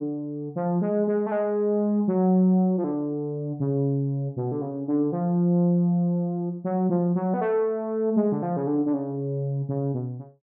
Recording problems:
none

